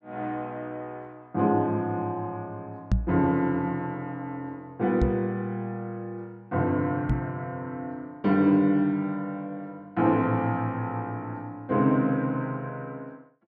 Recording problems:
microphone thump; at 3 s, at 5 s and at 7 s; peak +7 dB vs average level

